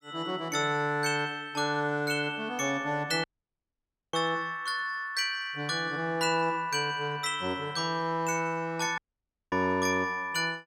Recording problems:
audio cutting out; at 3 s for 1 s and at 9 s for 0.5 s

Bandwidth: 16 kHz